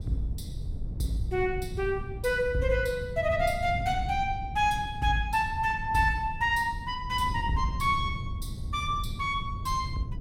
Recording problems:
wind on the microphone; below 120 Hz, SNR 9 dB

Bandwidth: 16 kHz